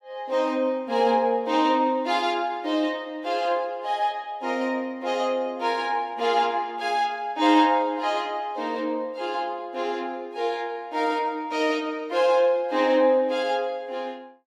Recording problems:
none

